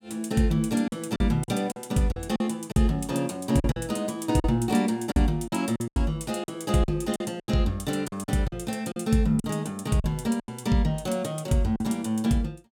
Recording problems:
lost packets; 9% of the sound replaced, filled with silence

